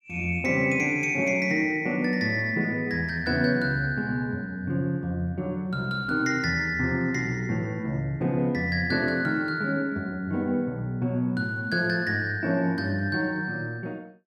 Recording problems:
none

